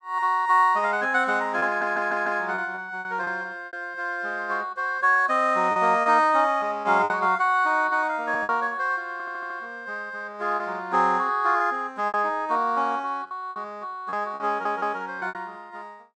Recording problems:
packet loss; 7% of the sound replaced, filled with repeated pitch periods
stutter; at 1.5 s, at 9 s and at 14 s

